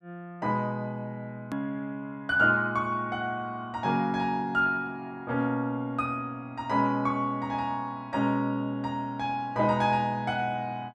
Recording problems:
edit click; at 1.5 s

